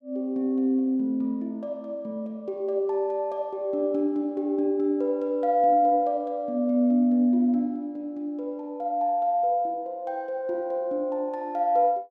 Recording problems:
none

